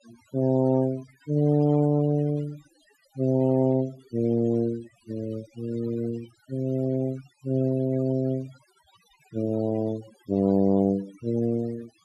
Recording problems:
noise reduction artefacts; signal-to-artefact ratio 22 dB

